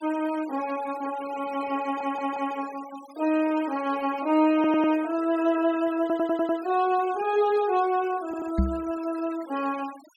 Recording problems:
noise reduction artefacts; signal-to-artefact ratio 20 dB
audio stuttering; 4 times, first at 2 s
knock on the microphone; at 8.5 s; peak +5 dB vs average level

